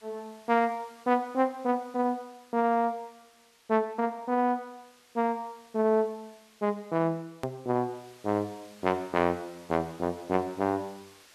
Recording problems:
background hiss; slope 0 dB per octave, SNR 26 dB
hard cut with a click; at 7.5 s

